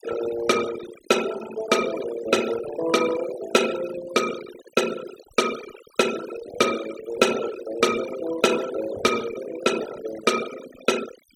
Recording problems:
denoising artefacts; signal-to-artefact ratio 10 dB

